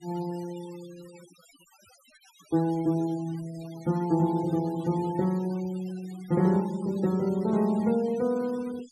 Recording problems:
denoising artefacts; signal-to-artefact ratio 22 dB

